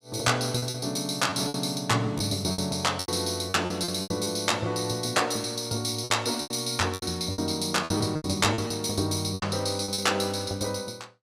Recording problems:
lost packets; 11% of the sound replaced, filled with repeated pitch periods

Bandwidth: 15.5 kHz